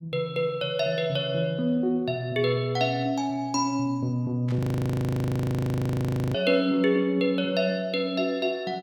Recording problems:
static burst; at 4.5 s; peak -14 dB vs average level
frozen audio; at 4.5 s for 2 s

